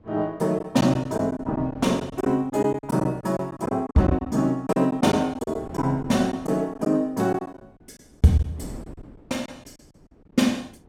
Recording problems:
wind noise; below 350 Hz, SNR 21 dB
lost packets; 10% of the sound replaced, filled with silence

